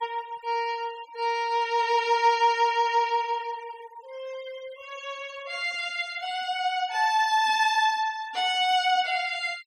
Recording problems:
noise reduction artefacts; signal-to-artefact ratio 24 dB

